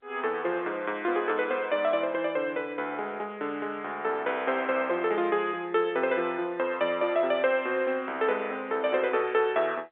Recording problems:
telephone audio; 280 Hz to 3.6 kHz, G.711

